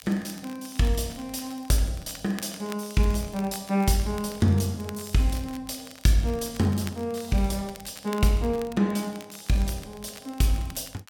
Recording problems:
crackle; vinyl, SNR 19 dB

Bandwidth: 17.5 kHz